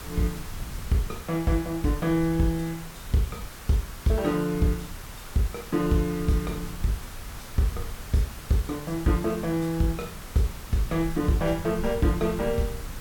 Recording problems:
hiss; SNR 14 dB
low-frequency rumble; below 98 Hz, SNR 14 dB

